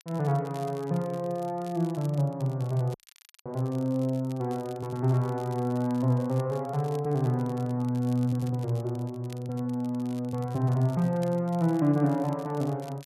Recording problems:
crackle; vinyl, SNR 25 dB
audio cutting out; at 3 s for 0.5 s

